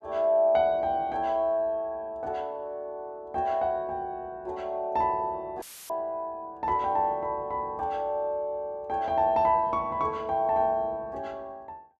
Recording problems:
dropout; at 5.5 s; filled with static

